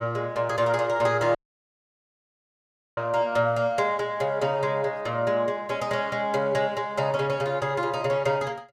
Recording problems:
dropout; at 1.5 s for 1.5 s

